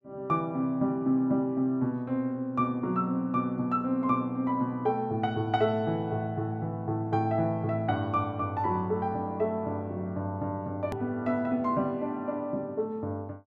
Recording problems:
hard cut with a click; at 11 s

